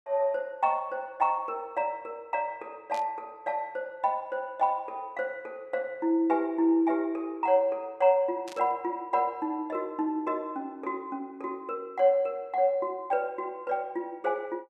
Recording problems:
burst of static; at 3 s and at 8.5 s; peak -11 dB vs average level

